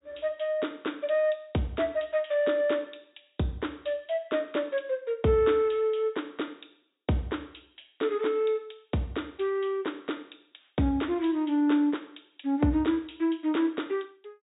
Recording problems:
treble cut off; nothing above 4 kHz

